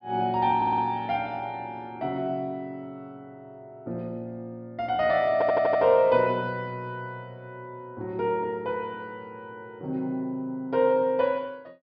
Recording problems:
low-pass filter; nothing above 5.5 kHz
audio stuttering; at 0.5 s and at 5.5 s

